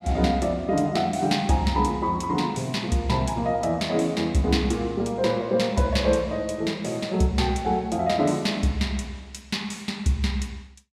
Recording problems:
none

